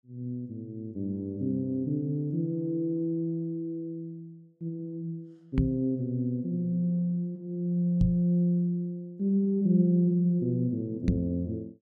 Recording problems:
microphone thump; at 5.5 s, at 8 s and at 11 s; peak +7 dB vs average level

